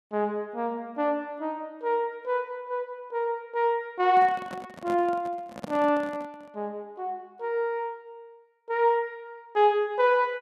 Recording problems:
handling noise; from 4 to 6.5 s; peak -4 dB vs average level

